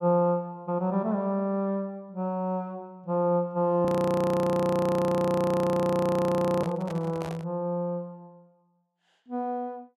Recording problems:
audio freezing; at 4 s for 3 s
handling noise; at 6.5 s; peak -7 dB vs average level

